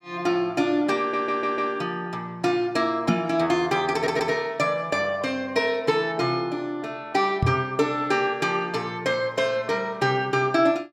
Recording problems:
audio stuttering; at 1 s and at 4 s
microphone thump; at 3 s and at 7.5 s; peak +4 dB vs average level

